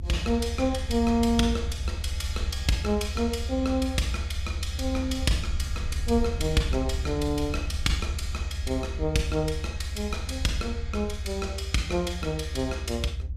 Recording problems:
rumble; below 78 Hz, SNR 4 dB

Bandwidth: 14.5 kHz